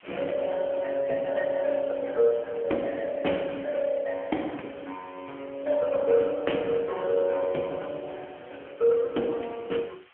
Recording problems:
phone line; 220 Hz to 3.2 kHz, AMR-NB
hiss; SNR 27 dB

